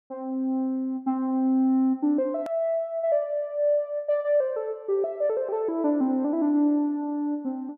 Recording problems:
click at an edit; at 2.5 s

